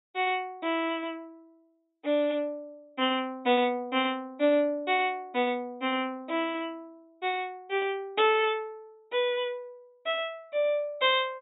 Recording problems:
treble missing; nothing above 4 kHz

